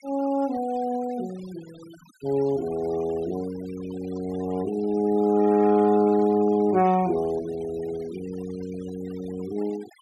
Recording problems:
noise reduction artefacts; signal-to-artefact ratio 21 dB

